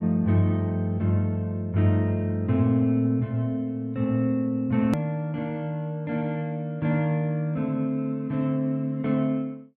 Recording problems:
click at an edit; at 5 s

